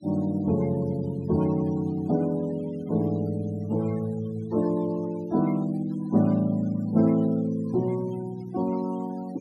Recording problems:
denoising artefacts; signal-to-artefact ratio 22 dB

